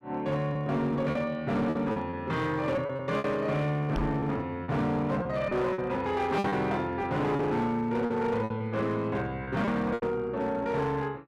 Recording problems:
distorted audio; hard clipping, signal-to-distortion ratio 12 dB
packet loss; 8% of the sound replaced, filled with repeated pitch periods
microphone bump; at 4 s; peak 0 dB vs average level

